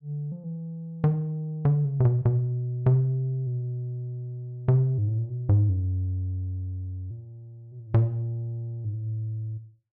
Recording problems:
none

